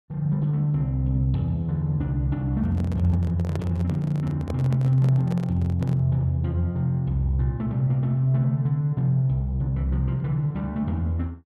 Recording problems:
microphone handling noise; from 2.5 to 6 s; peak -7 dB vs average level

